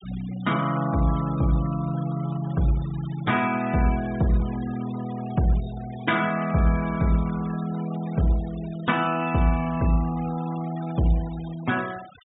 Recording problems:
treble missing; nothing above 4 kHz
denoising artefacts; signal-to-artefact ratio 18 dB

